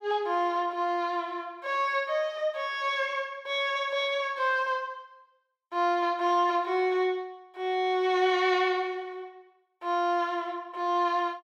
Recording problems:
none

